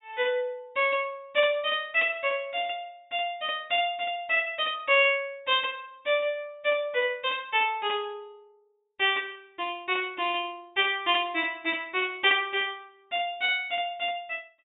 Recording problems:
treble cut off; nothing above 4 kHz

